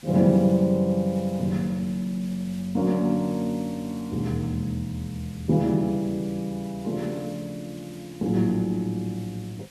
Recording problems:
background hiss; slope +1 dB per octave, SNR 23 dB

